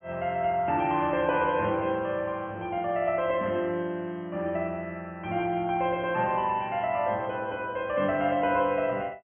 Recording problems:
treble cut off; nothing above 3.1 kHz

